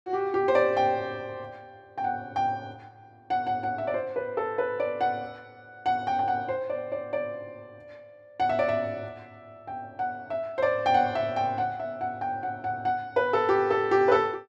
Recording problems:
none

